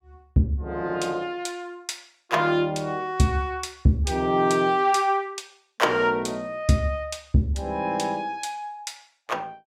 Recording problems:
none

